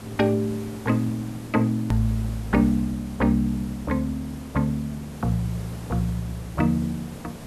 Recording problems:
background hiss; slope -6 dB per octave, SNR 15 dB
hard cut with a click; at 2 s

